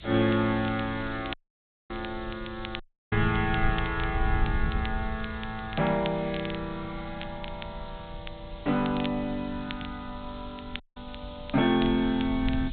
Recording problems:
treble missing; nothing above 4 kHz
hiss; SNR 21 dB
wind noise; below 88 Hz, SNR 9 dB
crackle; vinyl, SNR 15 dB
dropout; at 1.5 s for 0.5 s, at 3 s and at 11 s

